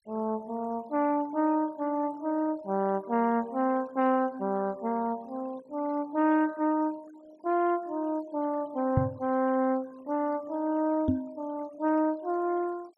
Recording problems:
noise reduction artefacts; signal-to-artefact ratio 25 dB
knock on the microphone; at 9 s and at 11 s; peak +7 dB vs average level

